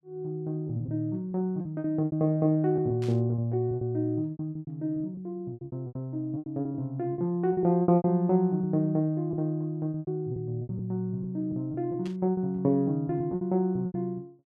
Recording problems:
lost packets; 14% of the sound replaced, filled with repeated pitch periods
burst of static; at 3 s and at 12 s; peak -13 dB vs average level

